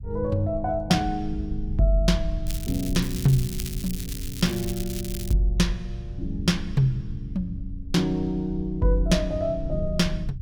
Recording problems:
rumble; below 80 Hz, SNR 10 dB
crackle; from 2.5 to 5.5 s; loose cable, SNR 11 dB

